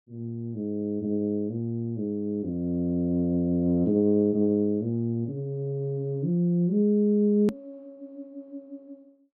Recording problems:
hard cut with a click; at 7.5 s

